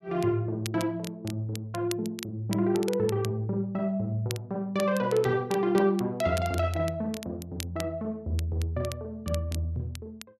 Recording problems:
crackle; vinyl, SNR 15 dB

